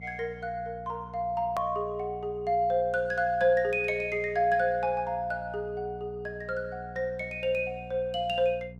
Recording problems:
hum; 60 Hz, harmonics up to 720 Hz, SNR 17 dB
click at an edit; at 1.5 s

